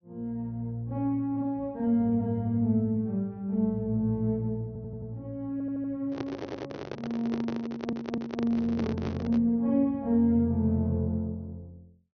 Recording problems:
treble missing; nothing above 6.3 kHz
stutter; 4 times, first at 4.5 s
handling noise; from 6 to 9.5 s; peak -2 dB vs average level

